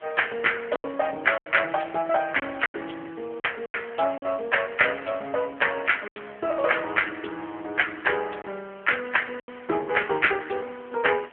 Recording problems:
phone line; 220 Hz to 3.2 kHz, AMR-NB
background hiss; SNR 27 dB
lost packets; 5% of the sound replaced, filled with silence

